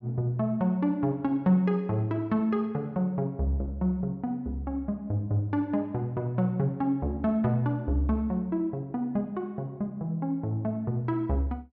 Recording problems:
none

